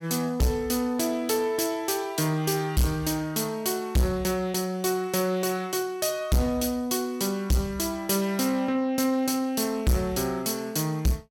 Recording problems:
distorted audio; soft clipping, signal-to-distortion ratio 6 dB

